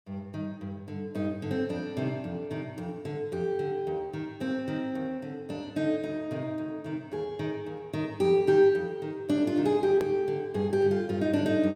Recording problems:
click at an edit; at 10 s

